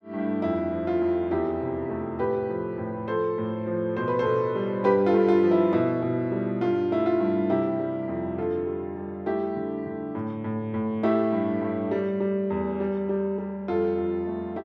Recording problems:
none

